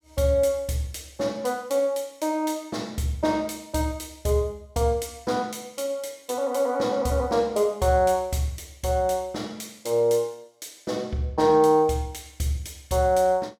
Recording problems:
none

